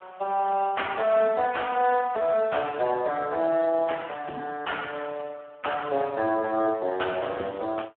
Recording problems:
telephone audio; 190 Hz to 3.3 kHz, Speex

